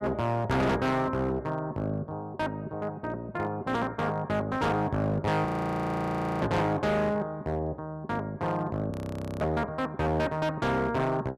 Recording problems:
distorted audio; hard clipping, signal-to-distortion ratio 7 dB
frozen audio; at 5.5 s for 1 s and at 9 s for 0.5 s

